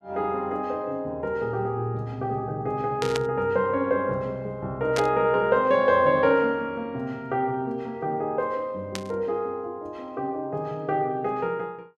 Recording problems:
burst of static; at 3 s, at 5 s and at 9 s; peak -1 dB vs average level

